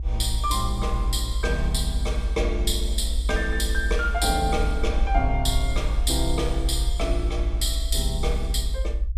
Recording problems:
low-frequency rumble; below 58 Hz, SNR 0 dB

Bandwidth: 14.5 kHz